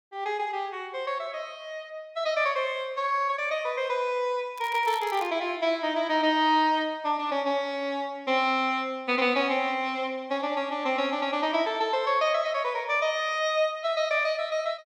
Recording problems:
crackling; at 4.5 s; loose cable, SNR 19 dB

